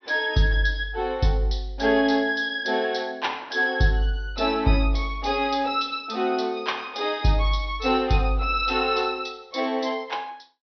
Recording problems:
low-pass filter; nothing above 6 kHz

